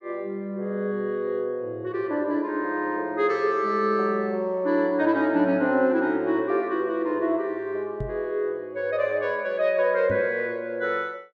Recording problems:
microphone bump; at 8 s and at 10 s; peak -3 dB vs average level

